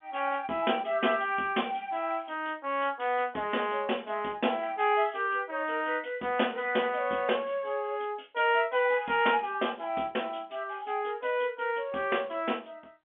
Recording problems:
phone line; 280 Hz to 3.4 kHz, G.711

